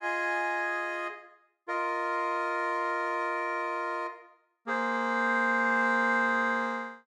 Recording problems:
none

